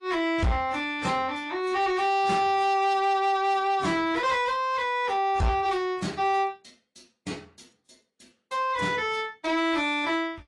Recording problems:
codec artefacts; AAC, then AAC, log-spectral distance 3 dB
distortion; soft clipping, signal-to-distortion ratio 12 dB

